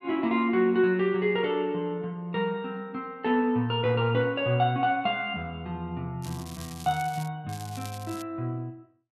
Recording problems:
crackle; from 6 to 7.5 s and at 7.5 s; loose cable, SNR 18 dB

